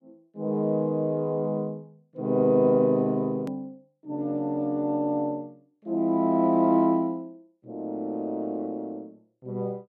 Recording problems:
hard cut with a click; at 3.5 s

